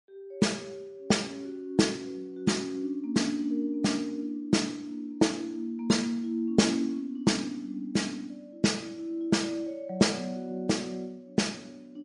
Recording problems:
lossy codec; MP3, log-spectral distance 2 dB, nothing above 10.4 kHz

